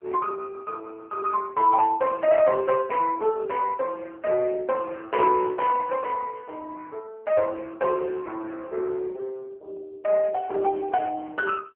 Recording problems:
telephone audio; 300 Hz to 2.5 kHz, AMR-NB

